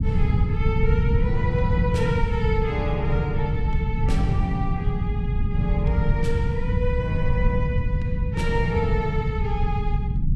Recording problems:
low-frequency rumble; below 140 Hz, SNR -4 dB

